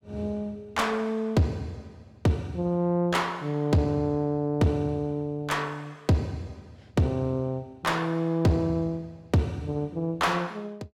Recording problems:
distorted audio; soft clipping, signal-to-distortion ratio 11 dB

